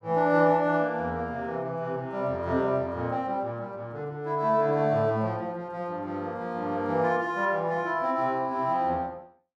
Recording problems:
none

